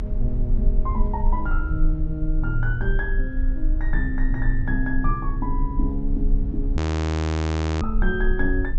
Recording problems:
treble missing; nothing above 8 kHz
rumble; below 54 Hz, strongest tone 28 Hz, SNR -3 dB
audio freezing; at 7 s for 1 s

